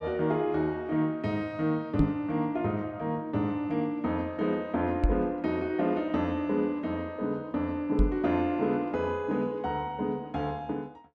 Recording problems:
microphone thump; at 2 s, at 5 s and at 8 s; peak +8 dB vs average level

